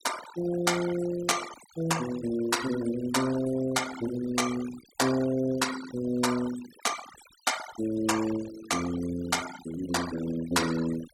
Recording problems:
noise reduction artefacts; signal-to-artefact ratio 11 dB

